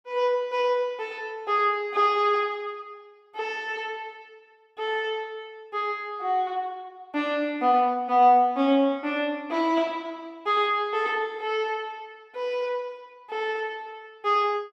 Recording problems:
none

